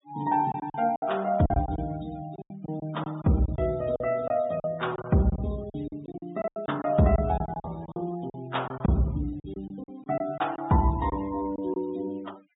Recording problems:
low-pass filter; nothing above 4 kHz
noise reduction artefacts; signal-to-artefact ratio 21 dB
lost packets; 12% of the sound replaced, filled with silence

